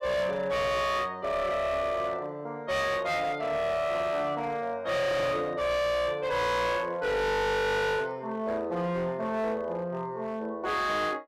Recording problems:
distortion; hard clipping, signal-to-distortion ratio 7 dB

